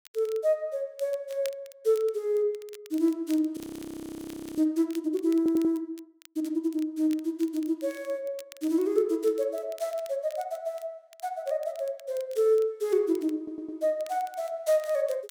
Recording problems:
crackling; vinyl, SNR 24 dB
audio freezing; at 3.5 s for 1 s
audio stuttering; at 5.5 s and at 13 s

